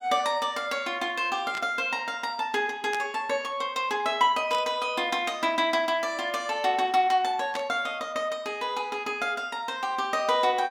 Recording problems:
static burst; 4 times, first at 1.5 s; peak -5 dB vs average level

